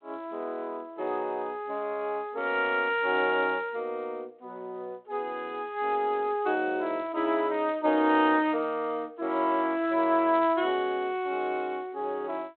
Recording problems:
telephone audio; 280 Hz to 4 kHz, G.726

